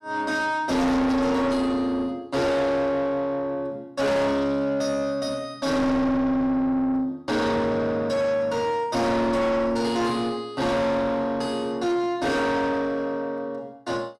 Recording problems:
distorted audio; soft clipping, signal-to-distortion ratio 7 dB

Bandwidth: 14 kHz